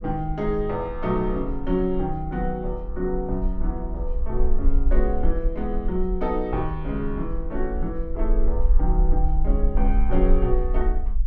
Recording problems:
treble cut off; nothing above 8 kHz
rumble; below 42 Hz, SNR 0 dB

